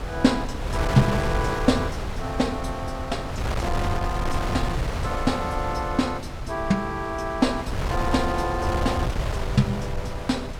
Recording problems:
wind noise; below 500 Hz, SNR 3 dB

